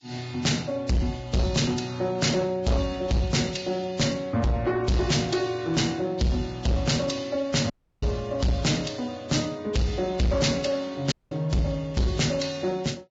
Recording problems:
lossy compression; Vorbis, log-spectral distance 4 dB, nothing above 7.3 kHz
distortion; soft clipping, signal-to-distortion ratio 6 dB
dropout; at 7.5 s and at 11 s

